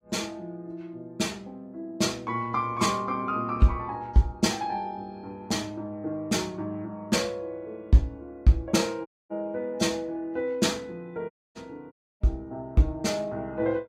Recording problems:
lossy codec; AAC, log-spectral distance 2 dB, nothing above 15.5 kHz
dropout; at 9 s, at 11 s and at 12 s

